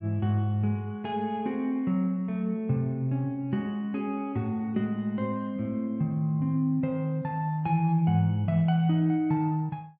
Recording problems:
none

